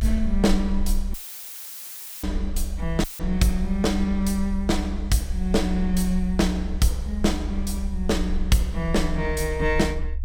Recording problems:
low-frequency rumble; below 66 Hz, strongest tone 22 Hz, SNR 6 dB
audio cutting out; at 1 s for 1 s and at 3 s; filled with static

